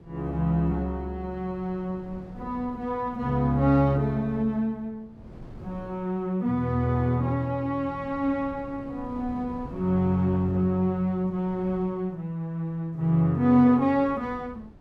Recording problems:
wind on the microphone; below 270 Hz, SNR 21 dB

